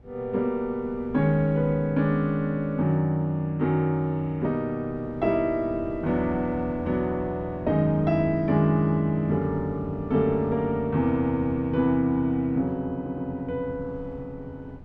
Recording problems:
wind on the microphone; below 240 Hz, SNR 19 dB
stutter; at 13 s

